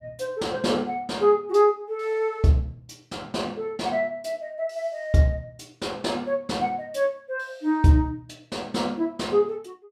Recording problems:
none

